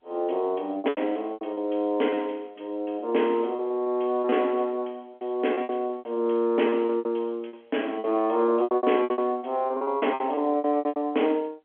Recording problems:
telephone audio; 240 Hz to 3.3 kHz, G.711
packet loss; 16% of the sound replaced, filled with repeated pitch periods

